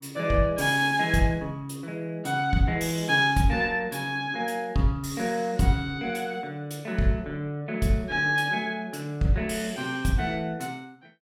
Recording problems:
none

